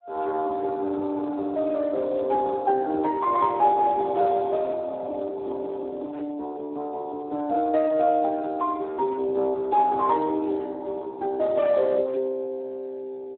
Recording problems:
telephone audio; 260 Hz to 2.1 kHz, Speex

